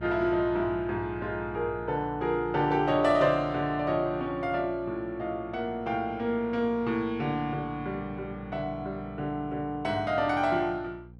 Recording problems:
hum; 60 Hz, harmonics up to 540 Hz, SNR 17 dB

